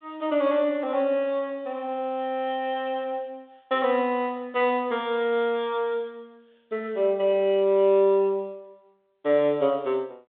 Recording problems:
telephone audio; 150 Hz to 3.7 kHz, G.726

